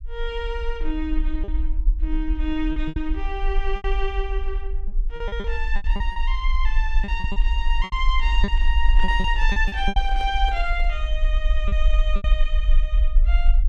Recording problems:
low-frequency rumble; below 46 Hz, SNR -3 dB
lost packets; 9% of the sound replaced, filled with repeated pitch periods
microphone handling noise; from 9 to 11 s; peak -9 dB vs average level

